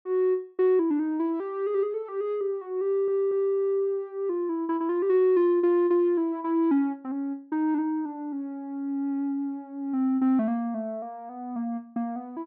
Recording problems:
stutter; at 3 s

